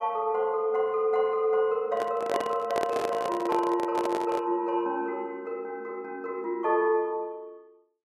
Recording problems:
handling noise; from 2 to 4.5 s; peak +2 dB vs average level

